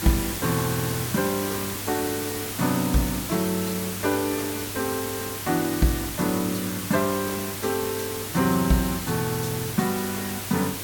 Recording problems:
hum; 50 Hz, harmonics up to 600 Hz, SNR 15 dB
hiss; slope -2 dB per octave, SNR 4 dB

